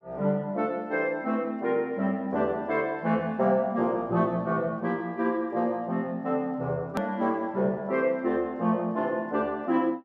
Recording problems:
edit click; at 7 s

